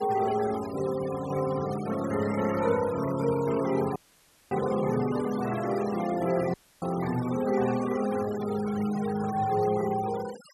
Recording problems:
noise reduction artefacts; signal-to-artefact ratio 15 dB
dropout; at 4 s for 0.5 s and at 6.5 s

